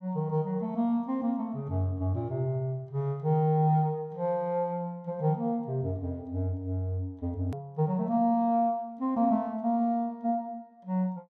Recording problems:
click at an edit; at 7.5 s

